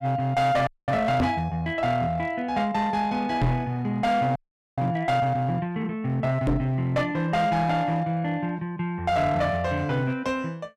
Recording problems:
distortion; hard clipping, uneven, signal-to-distortion ratio 10 dB
audio freezing; at 0.5 s and at 4.5 s
knock on the microphone; at 1 s, at 3.5 s and at 6.5 s; peak +5 dB vs average level

